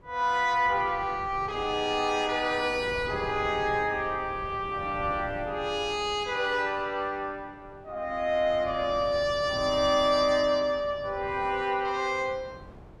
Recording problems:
wind noise; below 490 Hz, SNR 18 dB

